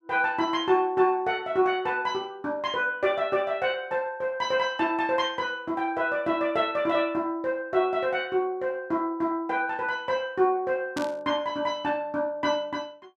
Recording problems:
burst of static; at 11 s; peak -6 dB vs average level

